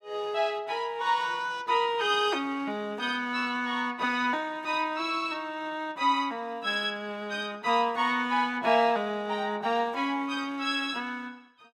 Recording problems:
none

